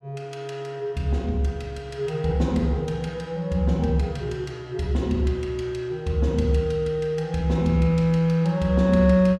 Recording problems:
none

